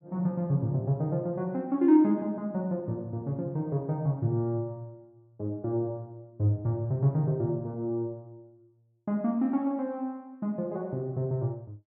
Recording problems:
none

